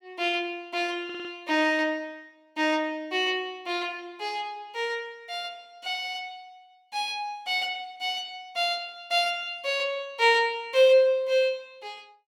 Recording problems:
audio stuttering; at 1 s

